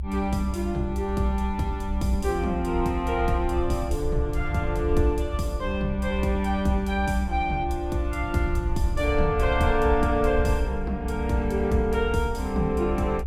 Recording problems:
low-frequency rumble; below 68 Hz, SNR 5 dB

